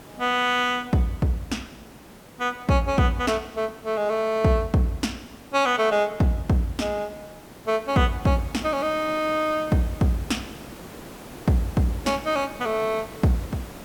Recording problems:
background hiss; slope -6 dB per octave, SNR 18 dB

